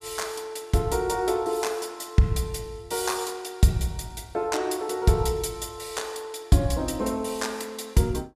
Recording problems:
none

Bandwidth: 15.5 kHz